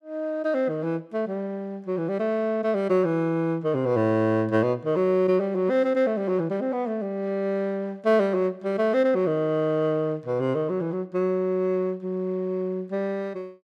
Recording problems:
none

